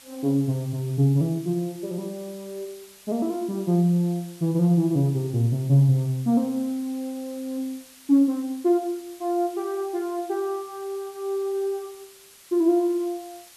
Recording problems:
hiss; slope +2 dB per octave, SNR 23 dB

